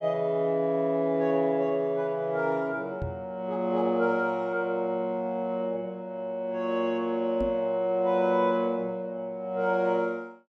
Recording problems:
microphone bump; at 3 s and at 7.5 s; peak -4 dB vs average level

